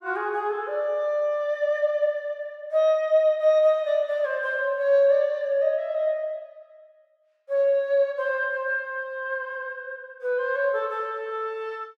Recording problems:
none

